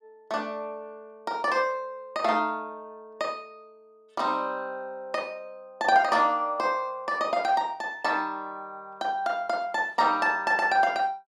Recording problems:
none

